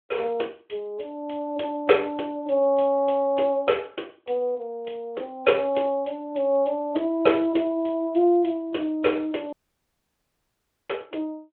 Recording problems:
phone line; 280 Hz to 3.4 kHz, Speex
audio cutting out; at 9.5 s for 1.5 s

